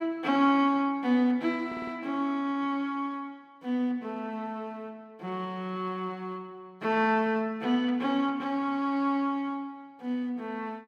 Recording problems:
stutter; at 1.5 s

